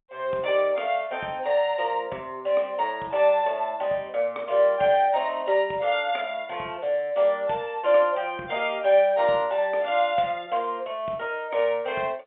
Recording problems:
telephone audio; 280 Hz to 3.7 kHz, G.711

